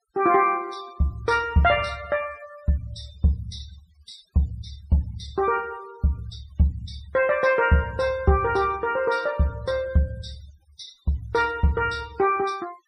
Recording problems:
denoising artefacts; signal-to-artefact ratio 24 dB

